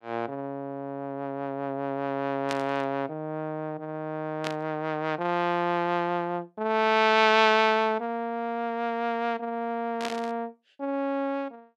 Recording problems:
burst of static; at 2.5 s, at 4.5 s and at 10 s; peak -2 dB vs average level

